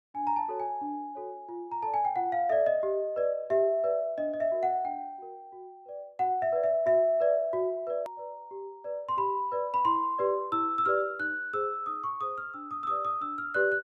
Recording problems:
click at an edit; at 8 s

